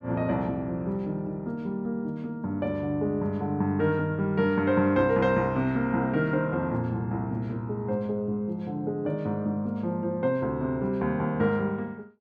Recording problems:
none

